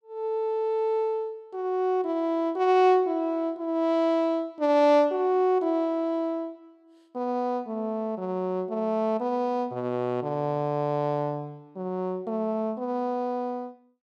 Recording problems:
none

